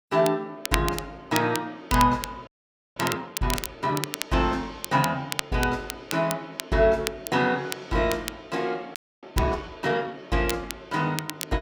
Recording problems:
crackle; vinyl, SNR 8 dB
frozen audio; at 2.5 s and at 9 s

